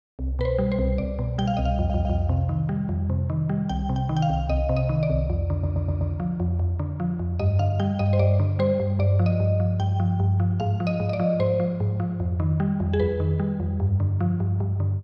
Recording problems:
audio stuttering; at 1.5 s and at 5.5 s

